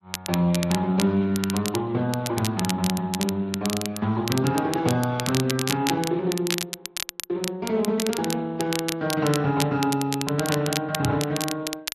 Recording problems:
codec artefacts; Speex, then MP3, log-spectral distance 2 dB, nothing above 13.1 kHz
crackling; vinyl, SNR 7 dB
microphone bump; at 11 s; peak 0 dB vs average level

